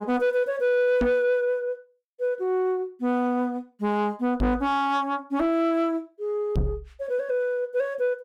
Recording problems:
distorted audio; soft clipping, signal-to-distortion ratio 11 dB
microphone thump; at 1 s, at 4.5 s and at 6.5 s; peak +4 dB vs average level

